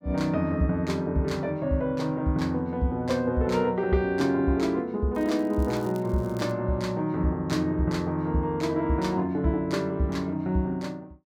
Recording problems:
crackling; from 5 to 6.5 s; loose cable, SNR 27 dB

